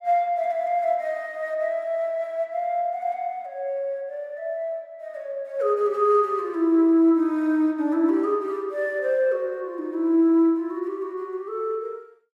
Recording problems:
none

